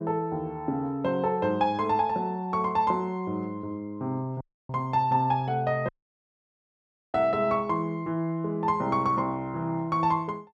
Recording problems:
audio cutting out; at 4.5 s and at 6 s for 1.5 s

